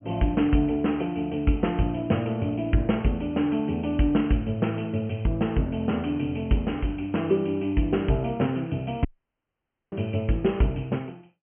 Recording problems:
low-pass filter; nothing above 3.2 kHz
audio cutting out; at 9 s for 1 s

